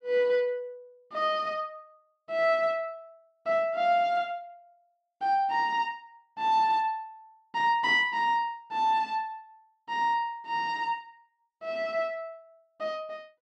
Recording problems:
none

